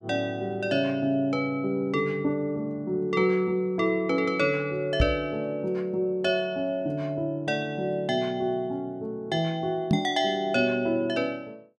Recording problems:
knock on the microphone; at 5 s and at 10 s; peak +6 dB vs average level

